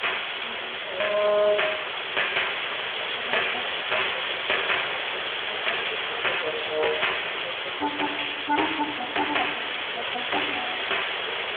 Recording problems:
phone line; 340 Hz to 3.5 kHz, Speex
distorted audio; hard clipping, signal-to-distortion ratio 12 dB
background hiss; SNR 2 dB

